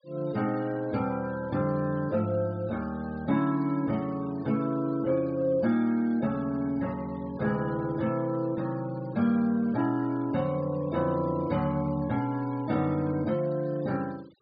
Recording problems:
treble cut off; nothing above 5 kHz
denoising artefacts; signal-to-artefact ratio 24 dB

